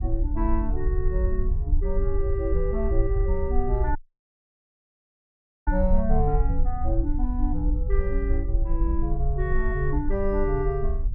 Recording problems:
rumble; below 56 Hz, SNR -2 dB
audio cutting out; at 4 s for 1.5 s

